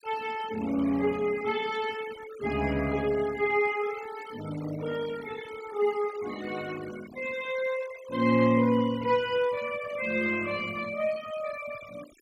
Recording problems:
denoising artefacts; signal-to-artefact ratio 17 dB

